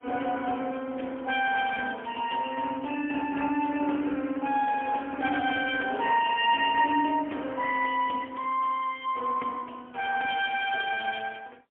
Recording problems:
phone line; 240 Hz to 3.1 kHz, AMR-NB, then MP3

